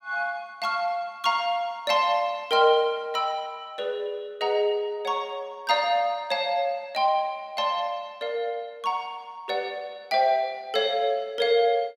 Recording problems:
none

